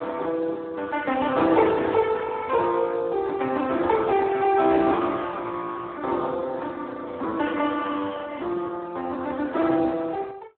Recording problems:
phone line; 260 Hz to 2.6 kHz, Speex

